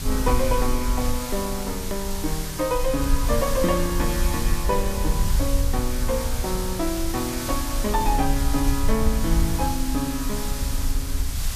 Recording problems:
hiss; slope +1 dB per octave, SNR 6 dB
low-frequency rumble; below 60 Hz, SNR 2 dB
edit click; at 2 s

